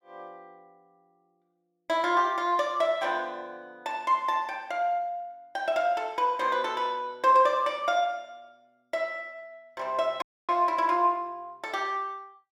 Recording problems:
dropout; at 10 s

